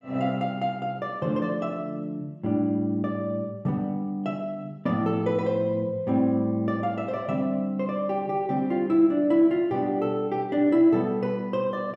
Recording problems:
none

